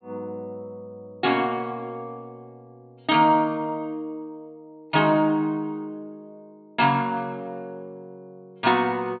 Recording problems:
low-pass filter; nothing above 4.3 kHz

